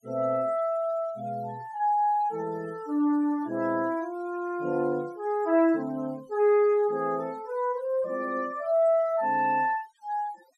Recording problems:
noise reduction artefacts; signal-to-artefact ratio 27 dB

